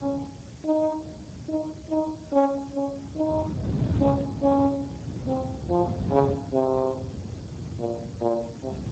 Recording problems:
lossy codec; Speex, log-spectral distance 6 dB
background hiss; slope -1 dB per octave, SNR 24 dB
wind noise; below 260 Hz, SNR 5 dB

